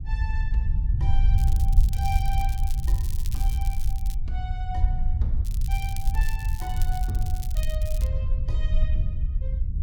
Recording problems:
low-frequency rumble; below 66 Hz, SNR -12 dB
crackle; from 1.5 to 4 s and from 5.5 to 8 s; loose cable, SNR 6 dB

